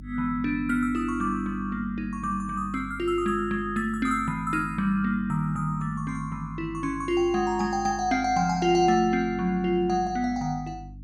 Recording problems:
mains hum; 50 Hz, harmonics up to 300 Hz, SNR 17 dB

